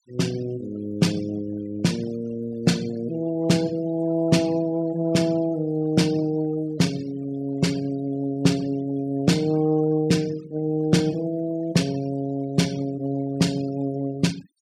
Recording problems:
denoising artefacts; signal-to-artefact ratio 21 dB

